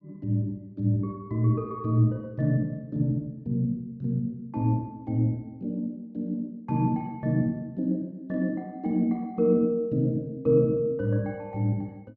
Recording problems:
none

